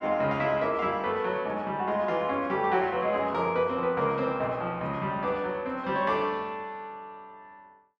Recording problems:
none

